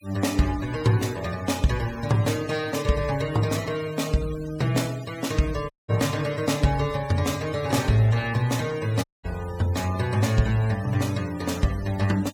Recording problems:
noise reduction artefacts; signal-to-artefact ratio 17 dB
audio cutting out; at 5.5 s and at 9 s

